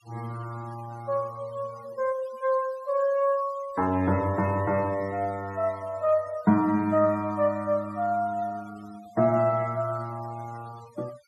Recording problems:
noise reduction artefacts; signal-to-artefact ratio 21 dB

